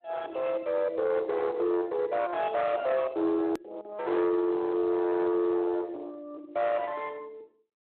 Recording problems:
telephone audio; 730 Hz to 2.3 kHz, Speex
distortion; soft clipping, signal-to-distortion ratio 9 dB
click at an edit; at 3.5 s

